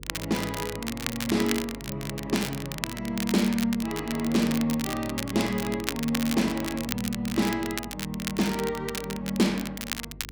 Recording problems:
hum; 50 Hz, harmonics up to 500 Hz, SNR 17 dB
crackle; vinyl, SNR 7 dB

